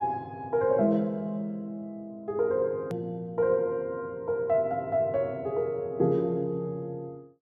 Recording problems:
hard cut with a click; at 3 s

